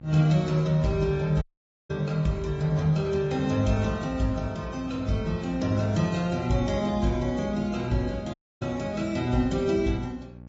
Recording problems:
treble missing; nothing above 7.3 kHz
codec artefacts; AAC, then MP3, log-spectral distance 2 dB
hum; 60 Hz, harmonics up to 1.1 kHz, SNR 19 dB
dropout; at 1.5 s and at 8.5 s

